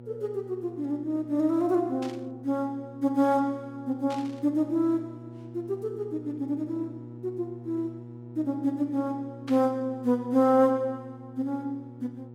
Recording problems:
electrical hum; 60 Hz, harmonics up to 840 Hz, SNR 16 dB
burst of static; at 2 s, at 4 s and at 9.5 s; peak -9 dB vs average level

